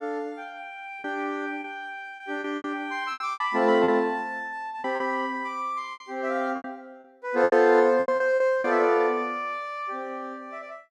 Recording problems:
packet loss; 9% of the sound replaced, filled with repeated pitch periods

